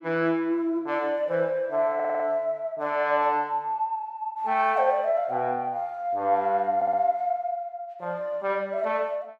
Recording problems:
audio stuttering; at 2 s and at 7 s

